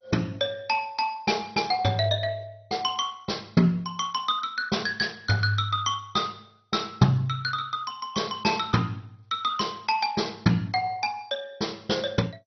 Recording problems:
lossy codec; MP2, log-spectral distance 5 dB, nothing above 5.8 kHz

